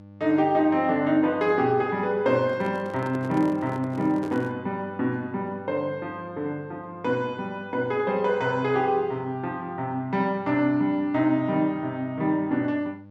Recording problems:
hum; 50 Hz, harmonics up to 1.2 kHz, SNR 22 dB
handling noise; from 2.5 to 4.5 s; peak -7 dB vs average level

